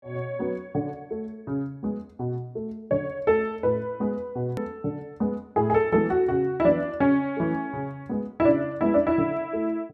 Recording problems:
click at an edit; at 4.5 s

